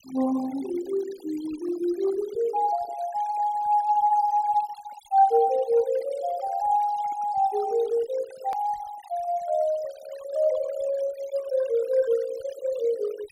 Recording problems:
denoising artefacts; signal-to-artefact ratio 20 dB
click at an edit; at 8.5 s

